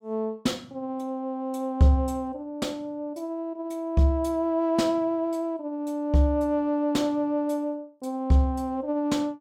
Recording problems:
none

